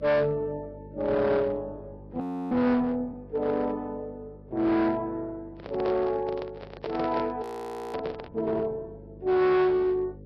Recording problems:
lossy codec; Vorbis, log-spectral distance 2 dB, nothing above 13.1 kHz
distorted audio; hard clipping, uneven, signal-to-distortion ratio 10 dB
hum; 50 Hz, harmonics up to 550 Hz, SNR 20 dB
frozen audio; at 2 s and at 7.5 s for 0.5 s
handling noise; from 5.5 to 8.5 s; peak -3 dB vs average level

